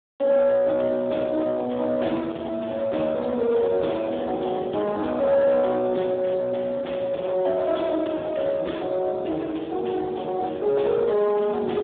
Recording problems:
phone line; 260 Hz to 2.2 kHz, Speex
distorted audio; soft clipping, signal-to-distortion ratio 12 dB

